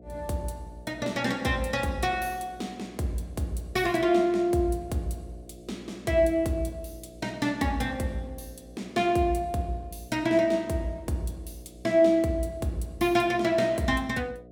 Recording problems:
hum; 60 Hz, harmonics up to 720 Hz, SNR 22 dB

